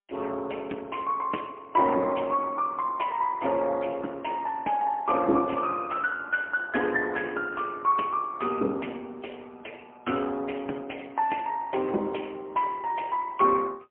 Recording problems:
telephone audio; 260 Hz to 3.1 kHz, AMR-NB, then MP3

